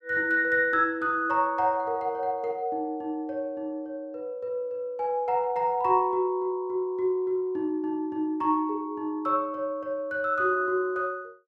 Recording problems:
none

